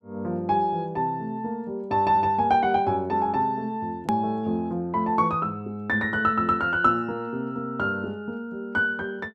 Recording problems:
click at an edit; at 4 s

